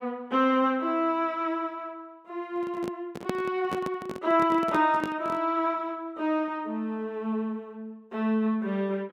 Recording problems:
microphone handling noise; from 2.5 to 5.5 s; peak +2 dB vs average level

